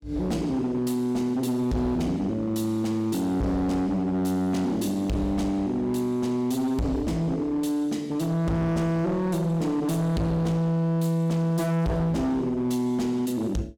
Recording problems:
distortion; hard clipping, signal-to-distortion ratio 8 dB

